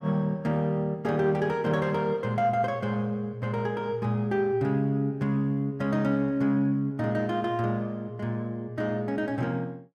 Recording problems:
none

